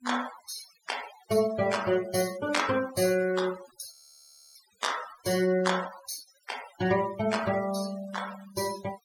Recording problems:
noise reduction artefacts; signal-to-artefact ratio 12 dB
frozen audio; at 4 s for 0.5 s

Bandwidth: 17 kHz